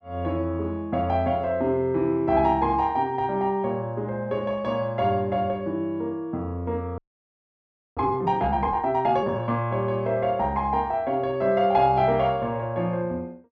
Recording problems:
frozen audio; at 7 s for 1 s

